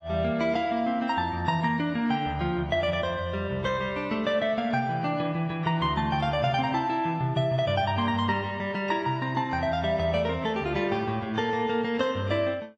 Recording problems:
lossy codec; AAC, log-spectral distance 2 dB

